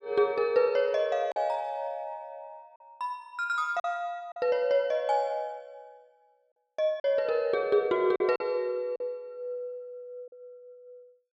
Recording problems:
packet loss; 3% of the sound replaced, filled with silence

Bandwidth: 12 kHz